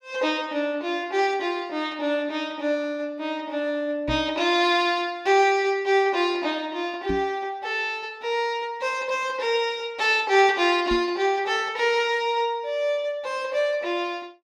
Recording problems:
knock on the microphone; at 4 s, at 7 s and at 11 s; peak -2 dB vs average level

